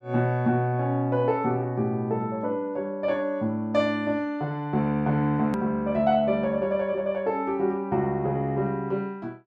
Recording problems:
click at an edit; at 5.5 s

